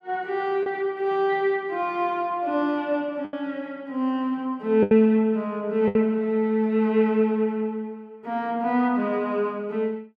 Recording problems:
packet loss; 3% of the sound replaced, filled with the last packet

